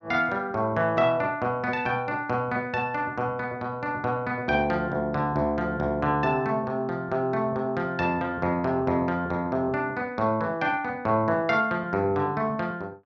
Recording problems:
none

